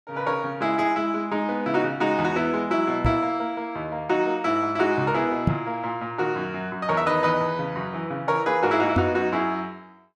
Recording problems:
microphone thump; at 3 s, at 5.5 s and at 9 s; peak +6 dB vs average level

